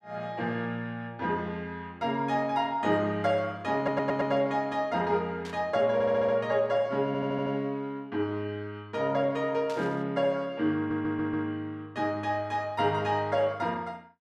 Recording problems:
stutter; 4 times, first at 4 s
static burst; at 5.5 s and at 9.5 s; peak -10 dB vs average level

